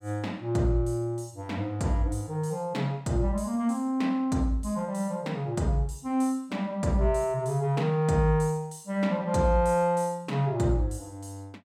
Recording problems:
none

